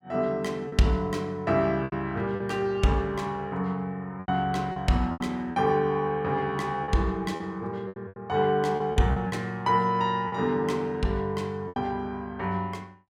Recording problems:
packet loss; 7% of the sound replaced, filled with repeated pitch periods

